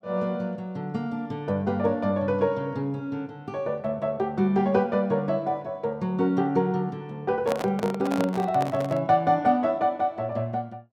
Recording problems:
microphone handling noise; from 7.5 to 9 s; peak 0 dB vs average level

